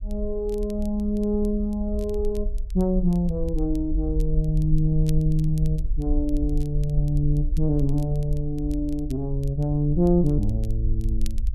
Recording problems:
rumble; below 48 Hz, SNR 5 dB
crackling; vinyl, SNR 28 dB

